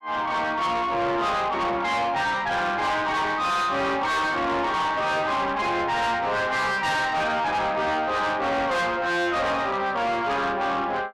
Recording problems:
distortion; soft clipping, signal-to-distortion ratio 7 dB

